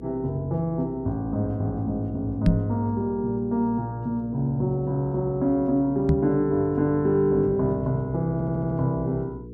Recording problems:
hum; 60 Hz, harmonics up to 480 Hz, SNR 16 dB
knock on the microphone; at 2.5 s and at 6 s; peak +8 dB vs average level
audio stuttering; at 8.5 s

